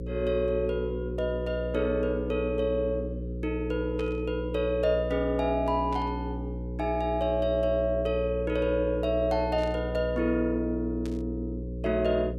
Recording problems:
electrical hum; 60 Hz, harmonics up to 540 Hz, SNR 7 dB
static burst; 4 times, first at 4 s; peak -13 dB vs average level

